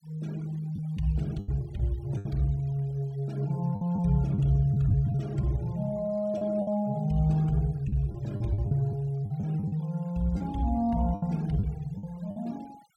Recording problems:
denoising artefacts; signal-to-artefact ratio 26 dB
packet loss; 8% of the sound replaced, filled with the last packet

